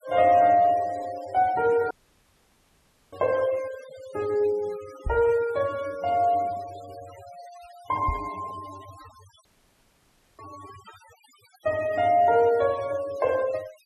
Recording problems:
noise reduction artefacts; signal-to-artefact ratio 22 dB
dropout; at 2 s for 1 s and at 9.5 s for 1 s
microphone thump; at 5 s and at 8 s; peak -2 dB vs average level

